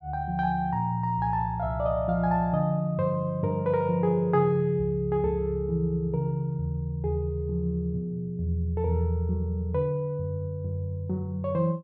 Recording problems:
low-pass filter; nothing above 8 kHz

